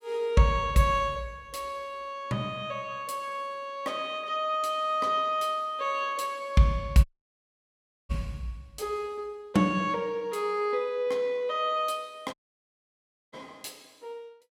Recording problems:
audio cutting out; at 7 s for 1 s and at 12 s for 1 s

